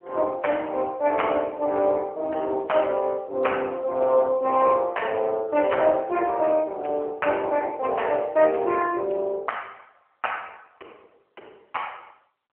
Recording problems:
phone line; 320 Hz to 3 kHz, AMR-NB

